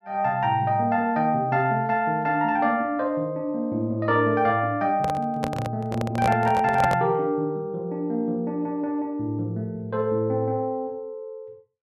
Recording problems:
microphone handling noise; from 5 to 7 s; peak +1 dB vs average level

